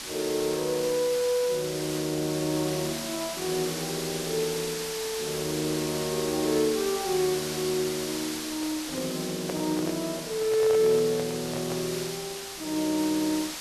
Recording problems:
background hiss; slope 0 dB per octave, SNR 6 dB
microphone handling noise; from 8.5 to 12 s; peak -3 dB vs average level

